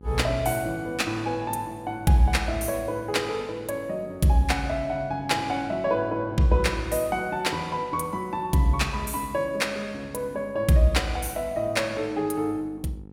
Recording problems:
hum; 50 Hz, harmonics up to 950 Hz, SNR 21 dB

